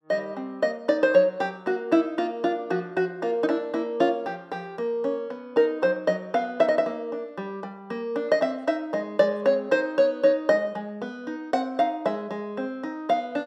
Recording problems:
none

